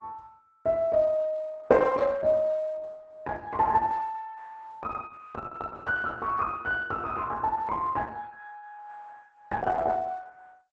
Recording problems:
lossy compression; Opus, log-spectral distance 3 dB, nothing above 7.8 kHz

